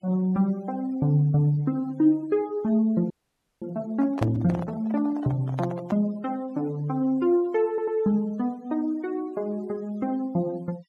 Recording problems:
noise reduction artefacts; signal-to-artefact ratio 26 dB
frozen audio; at 3 s for 0.5 s
handling noise; from 4 to 6 s; peak -2 dB vs average level
stutter; at 7.5 s

